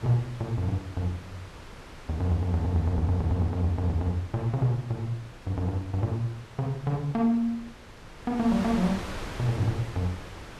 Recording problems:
wind noise; below 1.7 kHz, SNR 14 dB

